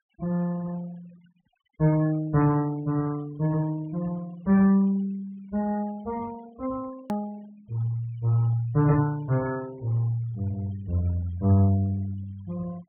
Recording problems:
treble cut off; nothing above 3.4 kHz
noise reduction artefacts; signal-to-artefact ratio 24 dB
edit click; at 7 s

